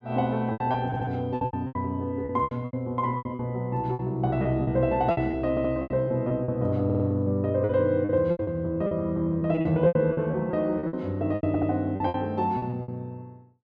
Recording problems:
lost packets; 15% of the sound replaced, filled with repeated pitch periods
stutter; 4 times, first at 1 s

